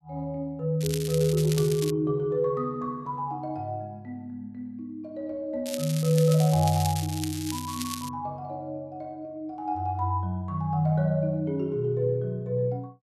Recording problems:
crackle; from 1 to 2 s and from 5.5 to 8 s; loose cable, SNR 9 dB

